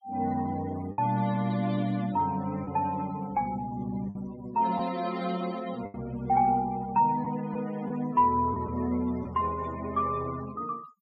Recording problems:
denoising artefacts; signal-to-artefact ratio 20 dB
packet loss; 3% of the sound replaced, filled with the last packet

